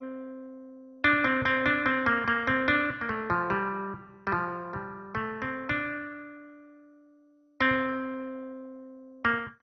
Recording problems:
lossy codec; MP2, log-spectral distance 3 dB, nothing above 6 kHz

